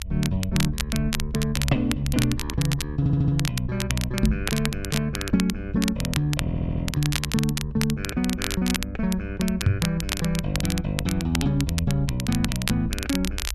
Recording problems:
rumble; below 66 Hz, strongest tone 64 Hz, SNR 10 dB
crackling; vinyl, SNR 6 dB
stutter; at 3 s and at 6.5 s
knock on the microphone; at 4 s and at 9.5 s; peak +10 dB vs average level

